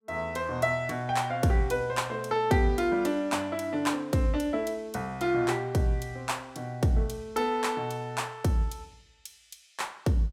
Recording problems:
none

